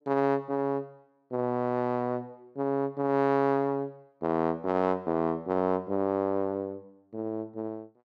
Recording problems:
none

